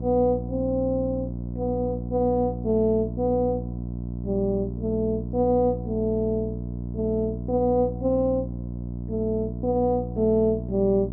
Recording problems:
hum; 60 Hz, harmonics up to 660 Hz, SNR 7 dB

